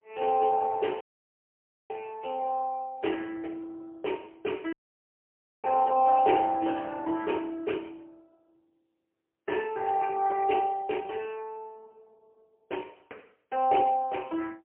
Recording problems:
telephone audio; 300 Hz to 3 kHz, AMR-NB, then MP3
audio cutting out; at 1 s for 1 s and at 4.5 s for 1 s

